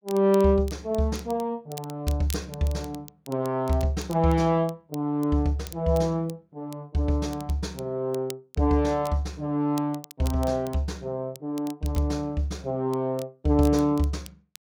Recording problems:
crackle; vinyl, SNR 20 dB

